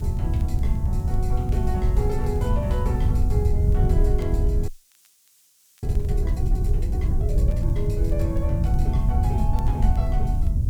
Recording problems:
hum; 50 Hz, harmonics up to 600 Hz, SNR 16 dB
background hiss; SNR 22 dB
wind noise; below 92 Hz, SNR -8 dB
crackle; vinyl, SNR 28 dB
audio freezing; at 4.5 s for 1 s

